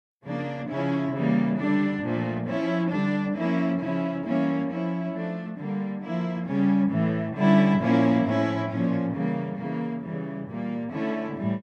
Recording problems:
none

